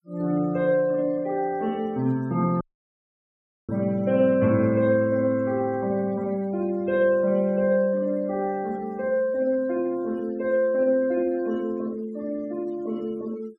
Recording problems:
denoising artefacts; signal-to-artefact ratio 25 dB
audio cutting out; at 2.5 s for 1 s

